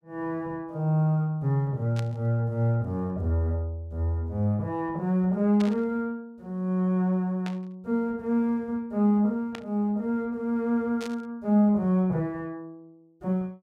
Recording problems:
burst of static; 5 times, first at 2 s; peak -8 dB vs average level

